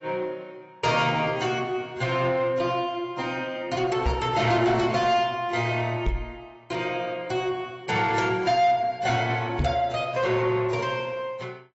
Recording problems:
lossy codec; AAC, log-spectral distance 3 dB, nothing above 7.8 kHz
distorted audio; soft clipping, signal-to-distortion ratio 12 dB
knock on the microphone; at 4 s, at 6 s and at 9.5 s; peak +2 dB vs average level

